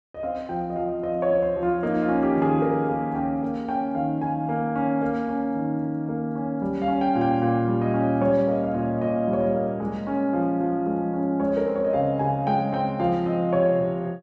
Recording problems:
none

